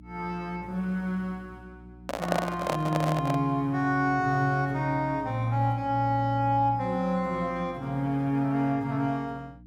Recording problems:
electrical hum; 60 Hz, harmonics up to 300 Hz, SNR 22 dB
handling noise; from 2 to 3.5 s; peak +4 dB vs average level

